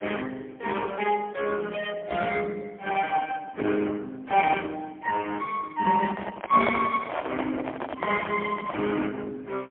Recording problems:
phone line; 220 Hz to 3.1 kHz, AMR-NB, then MP3
handling noise; from 6 to 9 s; peak +2 dB vs average level

